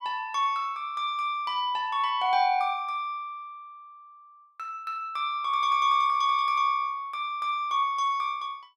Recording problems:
none

